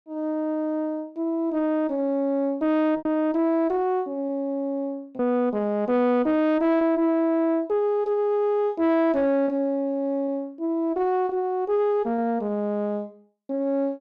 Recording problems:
distortion; soft clipping, signal-to-distortion ratio 10 dB
lost packets; 2% of the sound replaced, filled with repeated pitch periods

